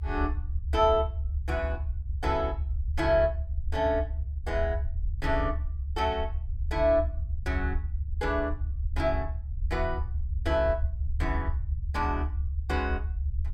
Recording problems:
low-frequency rumble; below 74 Hz, SNR 2 dB

